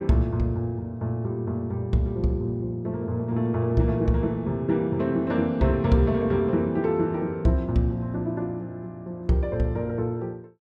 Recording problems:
none

